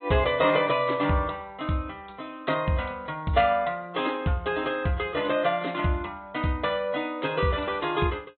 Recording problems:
low-pass filter; nothing above 3.9 kHz
codec artefacts; AAC, log-spectral distance 2 dB

